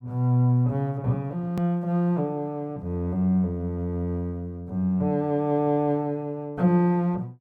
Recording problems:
click at an edit; at 1.5 s

